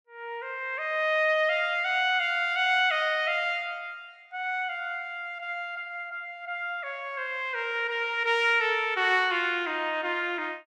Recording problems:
none

